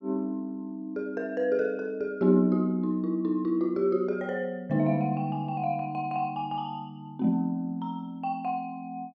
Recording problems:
none

